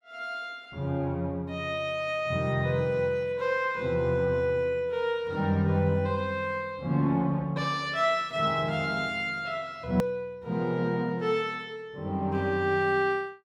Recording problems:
hard cut with a click; at 10 s

